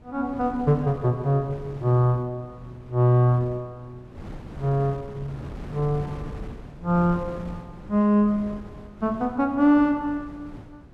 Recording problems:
wind on the microphone; below 320 Hz, SNR 17 dB

